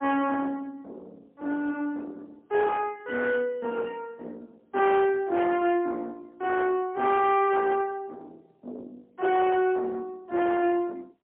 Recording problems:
phone line; 260 Hz to 3.5 kHz, AMR-NB, then MP3
distorted audio; soft clipping, signal-to-distortion ratio 11 dB

